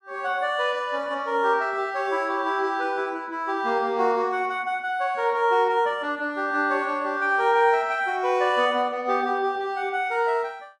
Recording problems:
none

